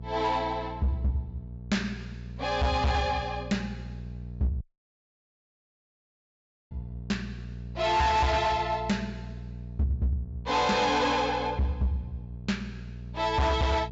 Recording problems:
treble cut off; nothing above 8 kHz
distortion; hard clipping, signal-to-distortion ratio 8 dB
hum; 60 Hz, harmonics up to 480 Hz, SNR 12 dB
audio cutting out; at 4.5 s for 2 s

